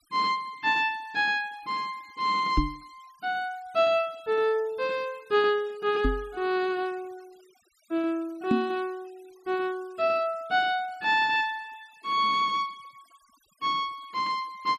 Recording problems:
noise reduction artefacts; signal-to-artefact ratio 28 dB
microphone thump; at 2.5 s, at 6 s and at 8.5 s; peak +6 dB vs average level

